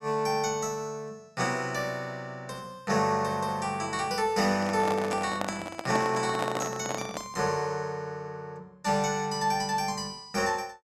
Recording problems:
handling noise; from 4.5 to 7.5 s; peak +2 dB vs average level

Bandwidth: 13 kHz